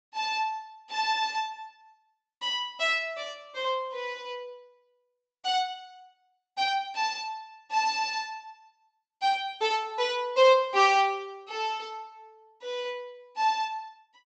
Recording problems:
low-pass filter; nothing above 8 kHz

